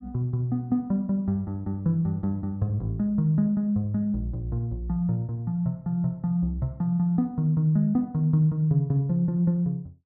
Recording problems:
none

